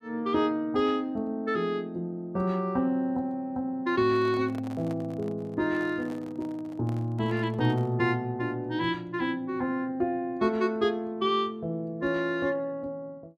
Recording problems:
handling noise; from 4 to 8 s; peak -10 dB vs average level

